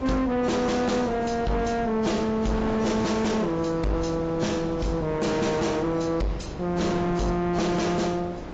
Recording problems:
lossy compression; AAC, log-spectral distance 3 dB, nothing above 7.3 kHz
distorted audio; soft clipping, signal-to-distortion ratio 7 dB
wind noise; below 730 Hz, SNR 10 dB

